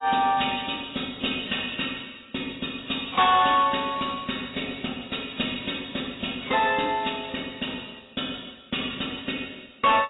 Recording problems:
lossy compression; AAC, log-spectral distance 16 dB, nothing above 3.8 kHz
distorted audio; soft clipping, signal-to-distortion ratio 10 dB

